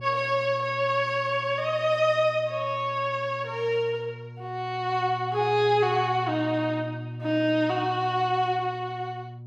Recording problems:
hum; 60 Hz, harmonics up to 600 Hz, SNR 13 dB

